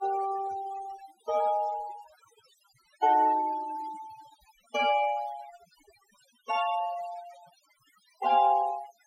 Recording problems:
denoising artefacts; signal-to-artefact ratio 18 dB

